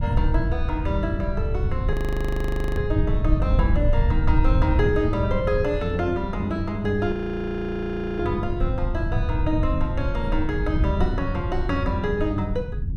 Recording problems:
low-frequency rumble; below 94 Hz, SNR 0 dB
audio freezing; at 2 s for 1 s and at 7 s for 1 s

